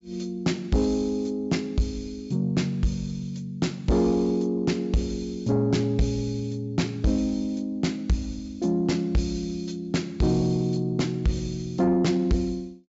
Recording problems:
low-pass filter; nothing above 8 kHz
distorted audio; soft clipping, signal-to-distortion ratio 10 dB

